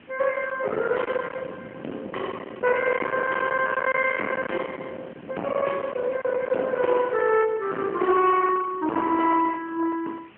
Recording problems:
phone line; 240 Hz to 3 kHz, AMR-NB
distorted audio; hard clipping, uneven, signal-to-distortion ratio 7 dB
hiss; SNR 28 dB
wind noise; below 1.6 kHz, SNR 11 dB

